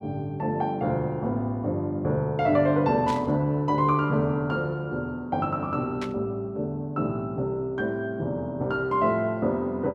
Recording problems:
static burst; at 3 s and at 6 s; peak -7 dB vs average level

